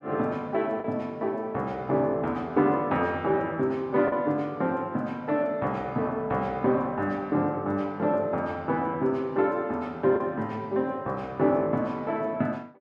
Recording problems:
lost packets; 0.9% of the sound replaced, filled with the last packet

